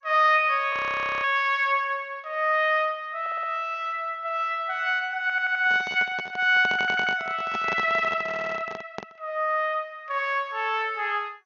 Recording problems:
lossy compression; MP2, log-spectral distance 2 dB, nothing above 6 kHz
frozen audio; at 0.5 s for 0.5 s
stutter; 4 times, first at 3 s
microphone handling noise; from 5.5 to 9 s; peak -5 dB vs average level

